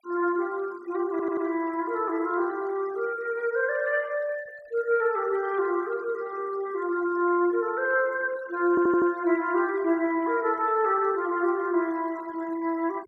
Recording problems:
noise reduction artefacts; signal-to-artefact ratio 23 dB
audio stuttering; at 1 s and at 8.5 s

